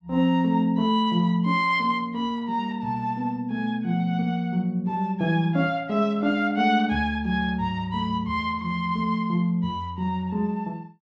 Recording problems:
none

